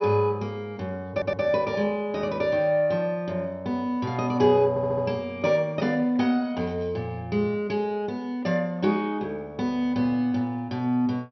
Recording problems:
treble cut off; nothing above 5.9 kHz
stutter; at 1 s and at 4.5 s

